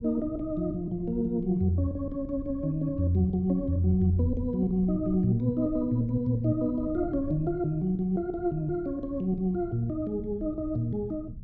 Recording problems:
rumble; below 130 Hz, SNR 15 dB

